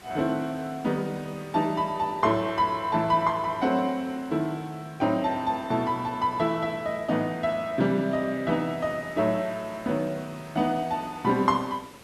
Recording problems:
background hiss; slope -3 dB per octave, SNR 22 dB

